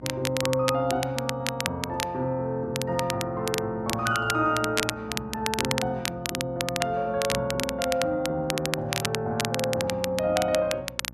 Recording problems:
hum; 60 Hz, harmonics up to 900 Hz, SNR 21 dB
crackling; vinyl, SNR 4 dB

